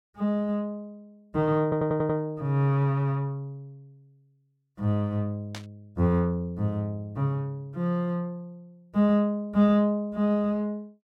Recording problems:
stutter; at 1.5 s
burst of static; at 5.5 s; peak -8 dB vs average level

